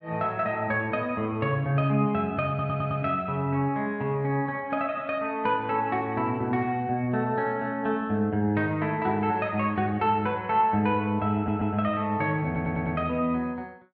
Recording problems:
stutter; at 2.5 s, at 11 s and at 12 s

